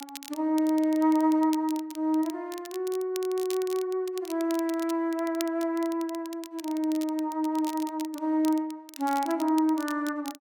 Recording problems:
crackling; vinyl, SNR 17 dB

